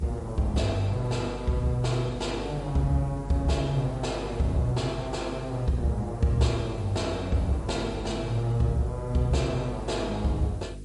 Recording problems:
codec artefacts; MP3, log-spectral distance 2 dB, nothing above 11 kHz
hum; 50 Hz, harmonics up to 500 Hz, SNR 11 dB
hiss; slope +1 dB per octave, SNR 28 dB

